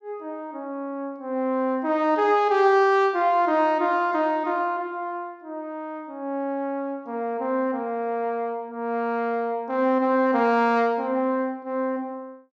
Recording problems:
treble missing; nothing above 8 kHz

